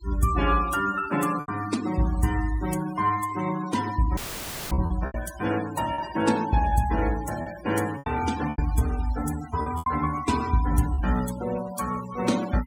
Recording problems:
noise reduction artefacts; signal-to-artefact ratio 13 dB
packet loss; 5% of the sound replaced, filled with repeated pitch periods
audio cutting out; at 4 s for 0.5 s; filled with static

